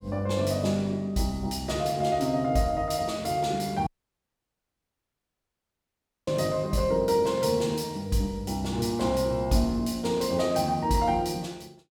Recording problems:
audio cutting out; at 4 s for 2.5 s

